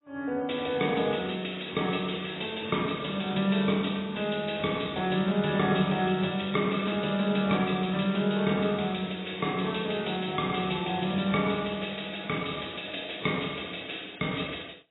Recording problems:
lossy compression; AAC, log-spectral distance 12 dB, nothing above 3.8 kHz

